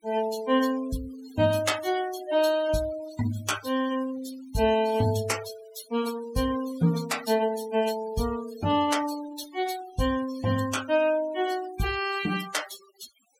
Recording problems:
noise reduction artefacts; signal-to-artefact ratio 13 dB

